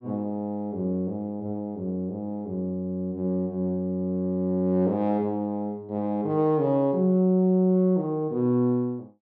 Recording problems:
none

